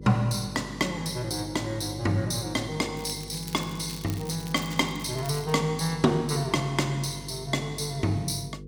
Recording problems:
hum; 50 Hz, harmonics up to 500 Hz, SNR 13 dB
crackling; from 3 to 5.5 s; loose cable, SNR 15 dB

